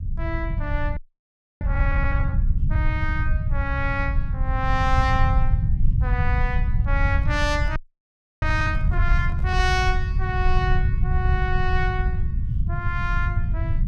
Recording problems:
low-frequency rumble; below 94 Hz, SNR -3 dB
audio freezing; at 1 s for 0.5 s and at 8 s for 0.5 s
microphone handling noise; from 7 to 10 s; peak -16 dB vs average level

